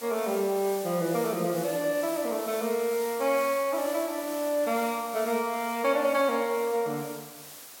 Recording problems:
background hiss; slope -1 dB per octave, SNR 13 dB

